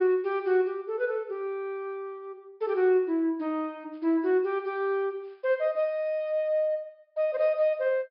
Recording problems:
treble missing; nothing above 5.5 kHz

